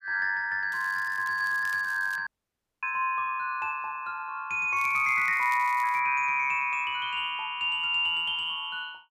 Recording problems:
crackling; from 0.5 to 2 s and from 5 to 6 s; loose cable, SNR 23 dB
dropout; at 2.5 s for 0.5 s

